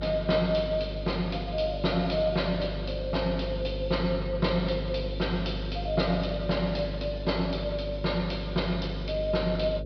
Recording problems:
treble cut off; nothing above 5.5 kHz
hum; 50 Hz, harmonics up to 550 Hz, SNR 7 dB

